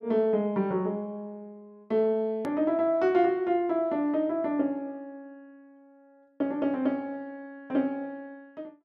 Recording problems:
click at an edit; at 2.5 s

